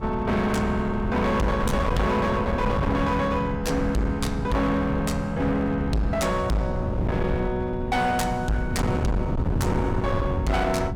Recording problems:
distortion; hard clipping, signal-to-distortion ratio 7 dB
wind on the microphone; below 220 Hz, SNR 5 dB

